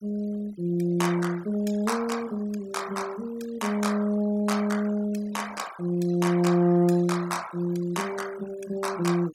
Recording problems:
noise reduction artefacts; signal-to-artefact ratio 18 dB

